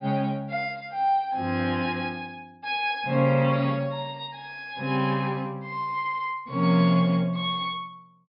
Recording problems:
low-pass filter; nothing above 5.5 kHz

